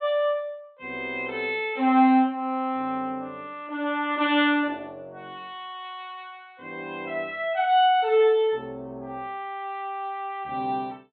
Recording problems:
treble missing; nothing above 4 kHz

